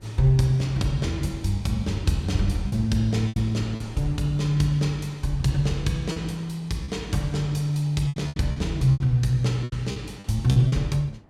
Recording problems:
wind on the microphone; below 330 Hz, SNR 27 dB
packet loss; 7% of the sound replaced, filled with repeated pitch periods

